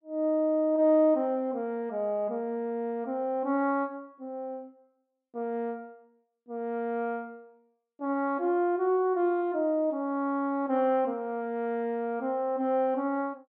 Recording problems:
none

